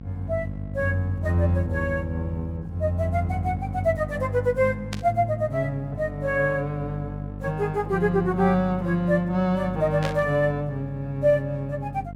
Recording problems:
electrical hum; 50 Hz, harmonics up to 550 Hz, SNR 11 dB
static burst; at 5 s and at 10 s; peak -4 dB vs average level

